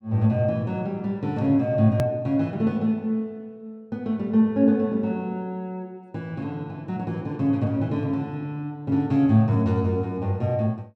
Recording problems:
edit click; at 2 s

